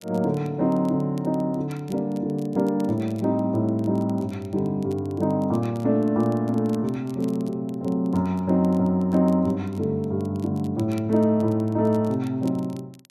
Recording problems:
crackle; vinyl, SNR 29 dB

